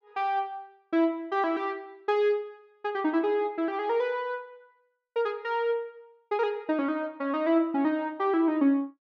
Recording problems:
none

